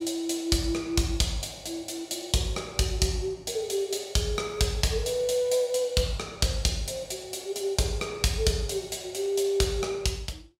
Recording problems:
none

